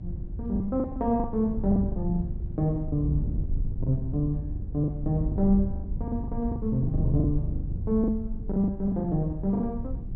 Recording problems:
mains hum; 50 Hz, harmonics up to 600 Hz, SNR 21 dB
wind noise; below 100 Hz, SNR 5 dB
packet loss; 15% of the sound replaced, filled with the last packet

